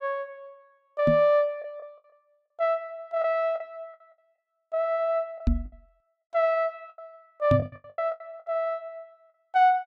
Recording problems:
lost packets; 8% of the sound replaced, filled with the last packet
microphone bump; at 1 s, at 5.5 s and at 7.5 s; peak +6 dB vs average level

